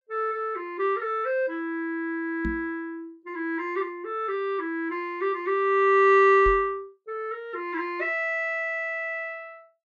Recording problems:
microphone bump; at 2.5 s and at 6.5 s; peak -2 dB vs average level

